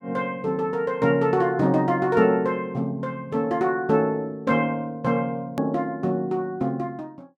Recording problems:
edit click; at 5.5 s

